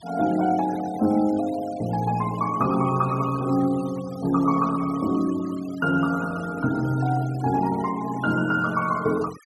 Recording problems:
denoising artefacts; signal-to-artefact ratio 20 dB

